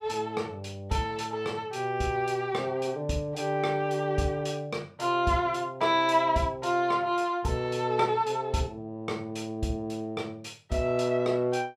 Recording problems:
none

